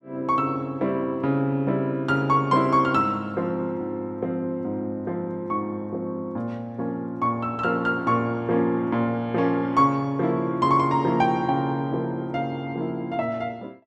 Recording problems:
none

